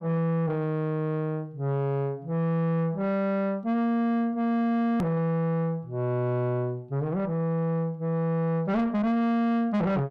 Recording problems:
distortion; soft clipping, signal-to-distortion ratio 7 dB
edit click; at 5 s

